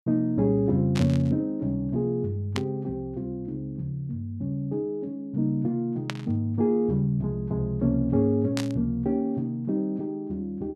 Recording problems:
burst of static; 4 times, first at 1 s; peak -1 dB vs average level

